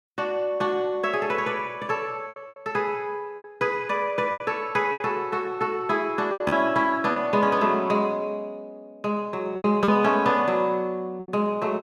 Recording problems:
lost packets; 7% of the sound replaced, filled with repeated pitch periods

